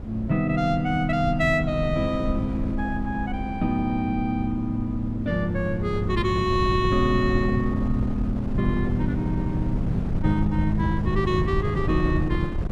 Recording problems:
wind on the microphone; below 140 Hz, SNR 5 dB

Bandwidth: 14 kHz